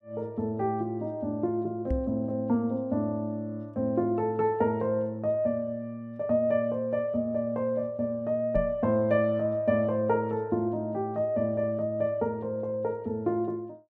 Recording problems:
microphone thump; at 2 s and at 8.5 s; peak +1 dB vs average level

